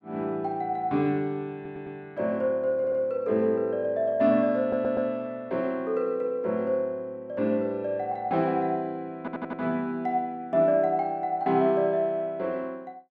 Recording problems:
stutter; 4 times, first at 1.5 s

